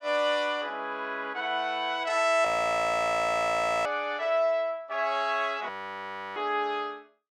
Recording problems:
audio freezing; at 2.5 s for 1.5 s and at 5.5 s for 0.5 s

